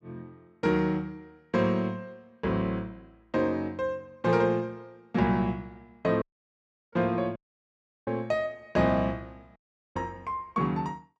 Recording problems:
dropout; at 6 s for 0.5 s, at 7.5 s for 0.5 s and at 9.5 s

